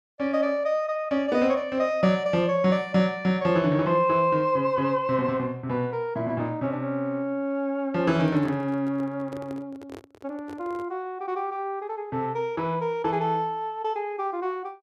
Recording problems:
handling noise; from 8 to 11 s; peak -10 dB vs average level

